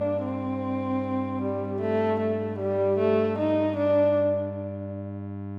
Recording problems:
hum; 50 Hz, harmonics up to 1.1 kHz, SNR 10 dB

